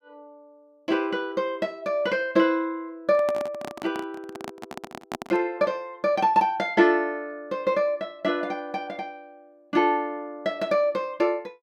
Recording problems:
microphone handling noise; from 3 to 5.5 s; peak -3 dB vs average level

